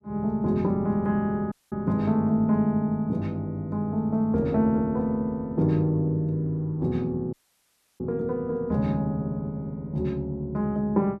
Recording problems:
dropout; at 1.5 s and at 7.5 s for 0.5 s

